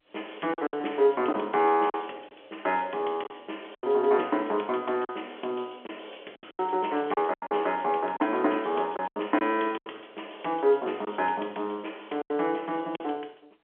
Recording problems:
phone line; 300 Hz to 3.4 kHz, G.711
packet loss; 8% of the sound replaced, filled with silence

